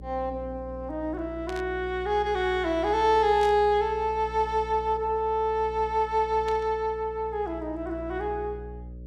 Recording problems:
hum; 60 Hz, harmonics up to 540 Hz, SNR 16 dB
burst of static; at 1.5 s, at 3.5 s and at 6.5 s; peak -10 dB vs average level

